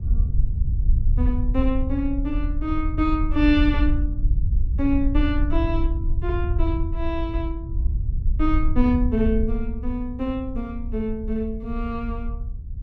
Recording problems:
low-frequency rumble; below 70 Hz, SNR 0 dB

